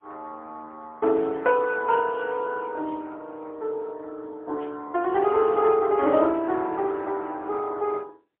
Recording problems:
phone line; 260 Hz to 2.8 kHz, AMR-NB, then MP3

